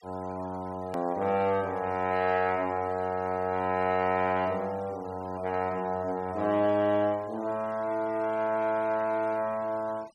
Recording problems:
denoising artefacts; signal-to-artefact ratio 23 dB
edit click; at 1 s

